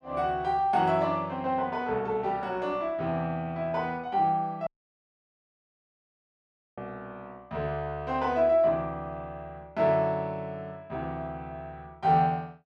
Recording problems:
audio cutting out; at 4.5 s for 2 s

